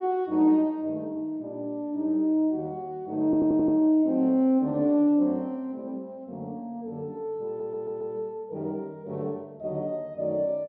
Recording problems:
audio stuttering; at 3.5 s and at 7.5 s

